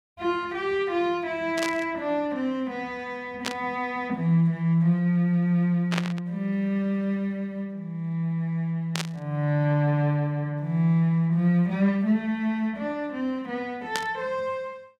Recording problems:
static burst; 5 times, first at 1.5 s; peak +2 dB vs average level

